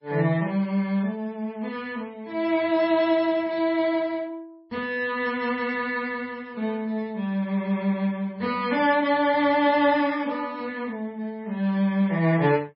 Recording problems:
lossy compression; MP3, log-spectral distance 2 dB, nothing above 5.3 kHz

